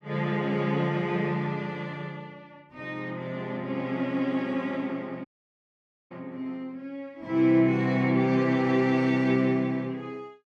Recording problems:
dropout; at 5.5 s for 1 s

